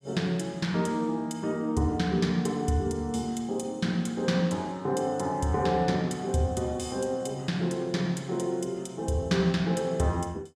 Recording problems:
none

